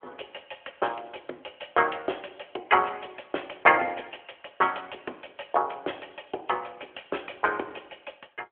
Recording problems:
phone line; 320 Hz to 3.3 kHz, AMR-NB

